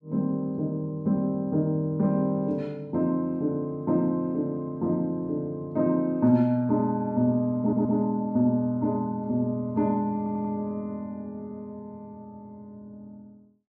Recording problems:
audio stuttering; at 7.5 s and at 10 s

